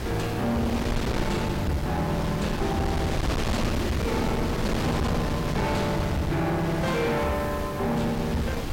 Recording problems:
distortion; hard clipping, signal-to-distortion ratio 8 dB
hiss; SNR 22 dB
wind noise; below 640 Hz, SNR 3 dB

